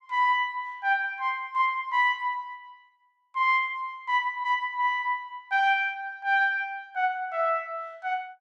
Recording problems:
none

